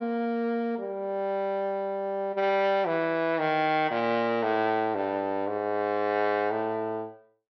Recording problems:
treble missing; nothing above 5.9 kHz

